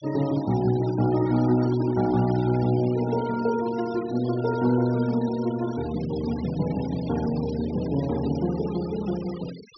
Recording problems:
low-pass filter; nothing above 5.7 kHz
denoising artefacts; signal-to-artefact ratio 18 dB

